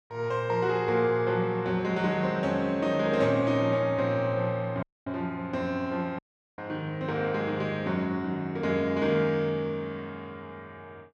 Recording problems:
audio cutting out; at 5 s and at 6 s

